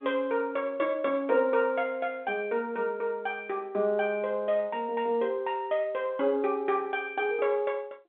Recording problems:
phone line; 240 Hz to 3.6 kHz, G.711

